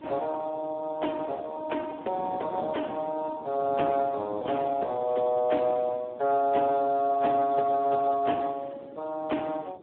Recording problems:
phone line; 260 Hz to 2.9 kHz, Speex
wind noise; below 460 Hz, SNR 18 dB

